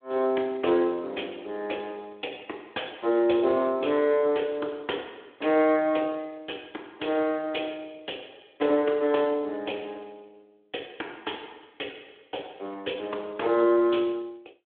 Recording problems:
telephone audio; 280 Hz to 3.6 kHz, Speex

